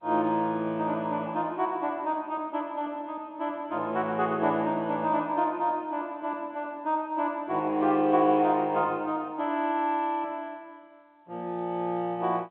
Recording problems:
telephone audio; 130 Hz to 4 kHz, G.711

